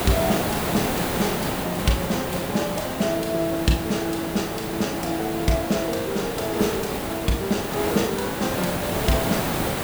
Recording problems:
hum; 50 Hz, harmonics up to 750 Hz, SNR 23 dB
background hiss; slope -5 dB per octave, SNR 2 dB

